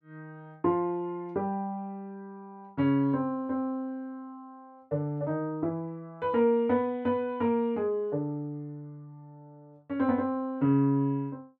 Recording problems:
none

